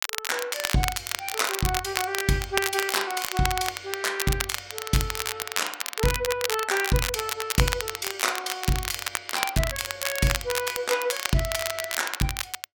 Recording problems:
crackle; vinyl, SNR 2 dB

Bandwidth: 17 kHz